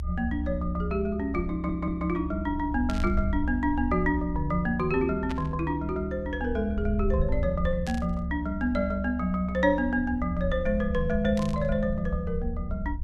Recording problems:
low-frequency rumble; below 72 Hz, SNR 6 dB
stutter; at 1.5 s
static burst; 4 times, first at 3 s; peak -7 dB vs average level

